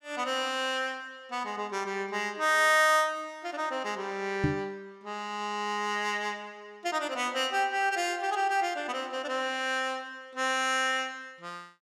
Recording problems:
microphone thump; at 4.5 s; peak +5 dB vs average level

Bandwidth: 15.5 kHz